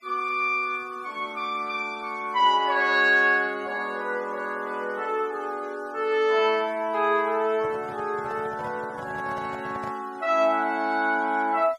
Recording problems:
denoising artefacts; signal-to-artefact ratio 25 dB
microphone handling noise; from 7.5 to 10 s; peak -11 dB vs average level

